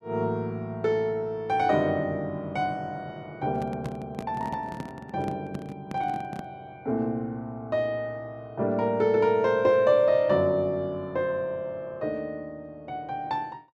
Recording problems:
microphone handling noise; from 3.5 to 6.5 s; peak -4 dB vs average level

